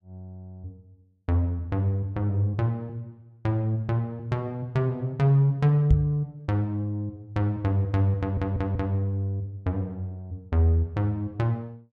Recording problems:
knock on the microphone; at 6 s; peak +8 dB vs average level
audio stuttering; at 8 s

